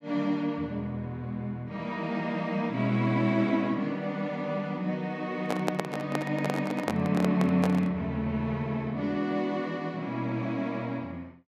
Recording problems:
microphone handling noise; from 5.5 to 8 s; peak +4 dB vs average level

